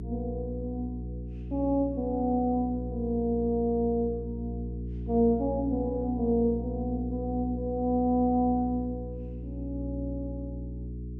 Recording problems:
hum; 60 Hz, harmonics up to 420 Hz, SNR 8 dB

